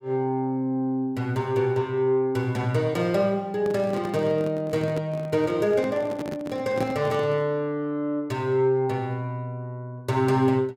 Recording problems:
microphone handling noise; from 3.5 to 7.5 s; peak -2 dB vs average level

